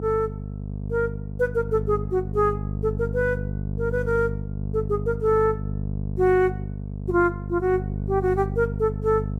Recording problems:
hum; 50 Hz, harmonics up to 500 Hz, SNR 6 dB

